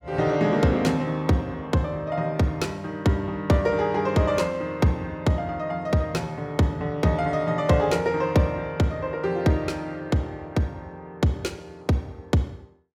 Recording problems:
none

